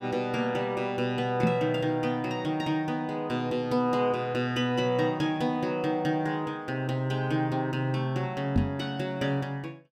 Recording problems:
microphone thump; at 1.5 s and at 8.5 s; peak +6 dB vs average level

